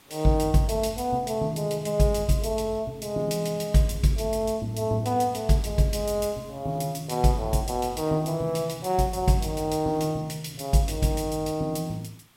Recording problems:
background hiss; slope -2 dB per octave, SNR 29 dB

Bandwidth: 16 kHz